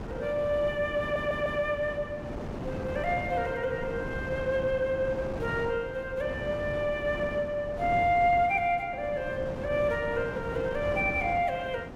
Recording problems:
wind on the microphone; below 570 Hz, SNR 9 dB
stutter; at 1 s

